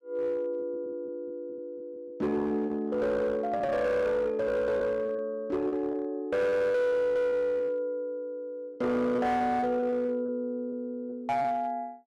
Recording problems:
distorted audio; hard clipping, uneven, signal-to-distortion ratio 12 dB
packet loss; 7% of the sound replaced, filled with repeated pitch periods

